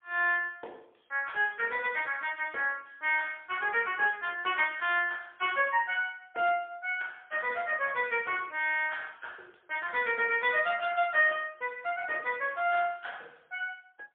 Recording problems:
telephone audio; 370 Hz to 3.4 kHz, AMR-NB, then MP3

